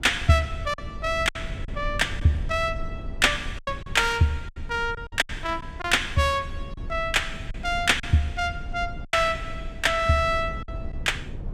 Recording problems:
rumble; below 100 Hz, SNR 12 dB
lost packets; 6% of the sound replaced, filled with silence

